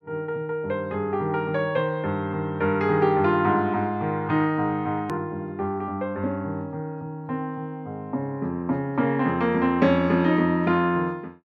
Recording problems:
click at an edit; at 5 s

